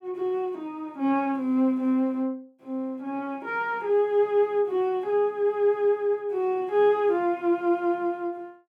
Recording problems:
none

